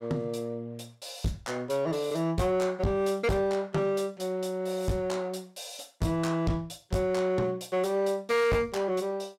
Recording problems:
distorted audio; soft clipping, signal-to-distortion ratio 8 dB

